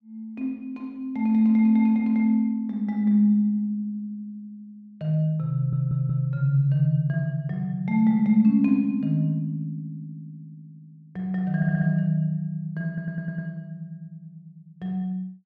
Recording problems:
stutter; at 5.5 s, at 12 s and at 13 s

